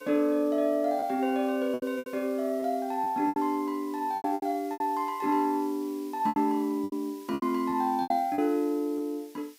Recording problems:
hiss; slope +5 dB per octave, SNR 24 dB
lost packets; 10% of the sound replaced, filled with repeated pitch periods

